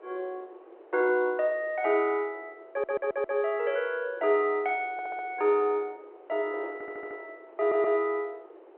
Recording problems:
phone line; 320 Hz to 3.2 kHz, G.711
wind on the microphone; below 660 Hz, SNR 21 dB
stutter; 4 times, first at 2.5 s

